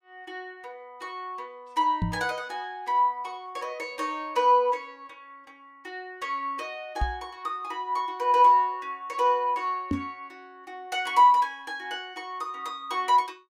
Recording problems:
microphone bump; at 2 s, at 7 s and at 10 s; peak +2 dB vs average level

